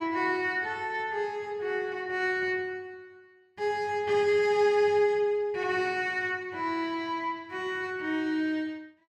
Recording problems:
none

